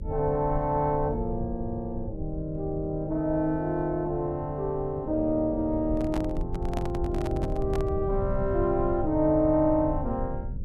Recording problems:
electrical hum; 50 Hz, harmonics up to 550 Hz, SNR 21 dB
low-frequency rumble; below 96 Hz, SNR 9 dB
handling noise; from 6 to 8 s; peak -4 dB vs average level

